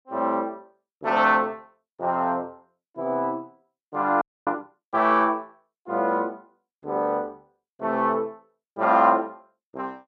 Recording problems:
audio freezing; at 4 s

